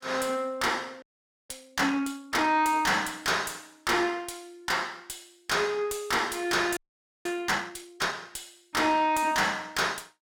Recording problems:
distortion; soft clipping, signal-to-distortion ratio 10 dB
audio freezing; at 1 s and at 7 s

